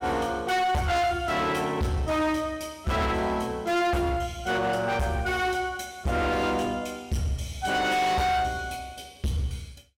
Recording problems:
distortion; hard clipping, signal-to-distortion ratio 7 dB

